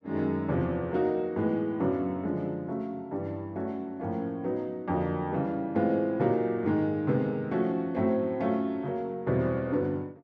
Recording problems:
none

